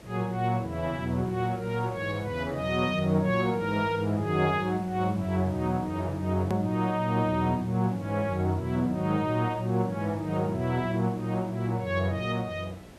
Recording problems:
hum; 60 Hz, harmonics up to 720 Hz, SNR 27 dB
background hiss; slope -5 dB per octave, SNR 20 dB
hard cut with a click; at 6.5 s

